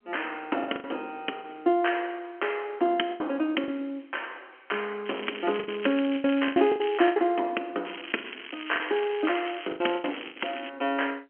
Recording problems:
phone line; 240 Hz to 3.2 kHz, G.711
lost packets; 9% of the sound replaced, filled with the last packet
crackle; from 5 to 7 s and from 8 to 11 s; loose cable, SNR 12 dB

